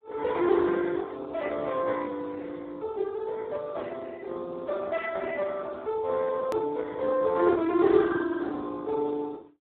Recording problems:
telephone audio; 280 Hz to 2 kHz, Speex
click at an edit; at 6.5 s

